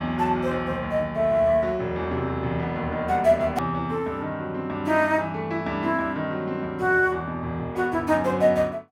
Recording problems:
edit click; at 3.5 s

